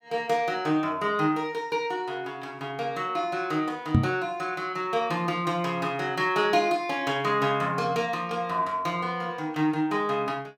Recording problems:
knock on the microphone; at 4 s; peak +9 dB vs average level

